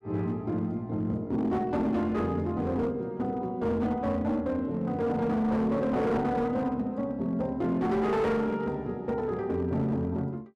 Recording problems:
distorted audio; hard clipping, signal-to-distortion ratio 12 dB

